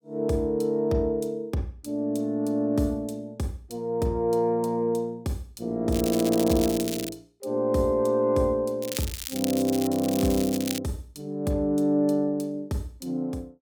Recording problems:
crackling; from 6 to 7 s and from 9 to 11 s; loose cable, SNR 8 dB

